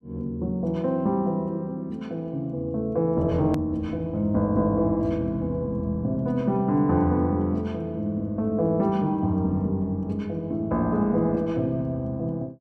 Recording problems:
click at an edit; at 3.5 s

